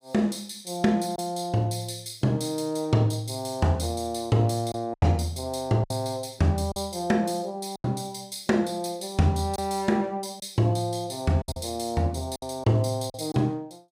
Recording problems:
packet loss; 4% of the sound replaced, filled with silence

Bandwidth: 15.5 kHz